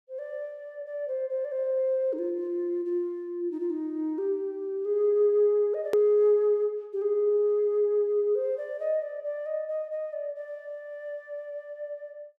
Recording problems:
click at an edit; at 6 s

